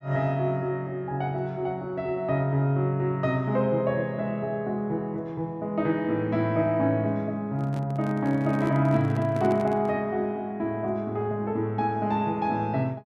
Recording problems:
microphone handling noise; from 7.5 to 10 s; peak -6 dB vs average level

